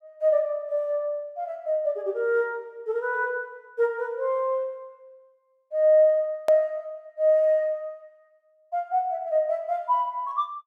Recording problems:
hard cut with a click; at 6.5 s

